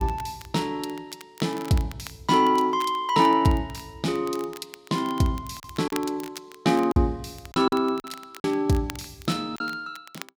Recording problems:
crackle; vinyl, SNR 20 dB
packet loss; 3% of the sound replaced, filled with silence

